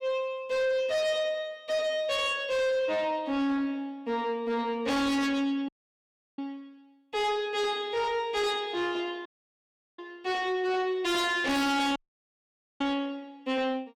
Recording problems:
distortion; soft clipping, signal-to-distortion ratio 6 dB
dropout; at 5.5 s for 0.5 s, at 9.5 s for 0.5 s and at 12 s for 1 s

